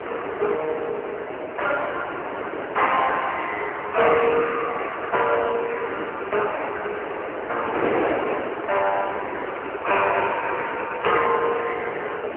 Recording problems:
phone line; 320 Hz to 3.1 kHz, AMR-NB
wind noise; below 1.2 kHz, SNR 6 dB

